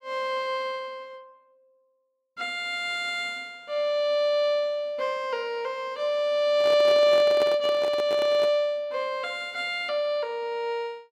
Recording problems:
microphone handling noise; from 6.5 to 8.5 s; peak -3 dB vs average level

